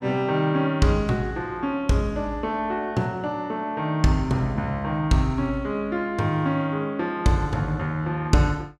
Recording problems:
none

